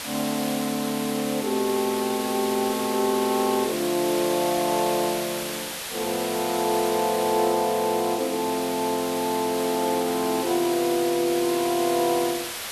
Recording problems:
background hiss; slope 0 dB per octave, SNR 7 dB

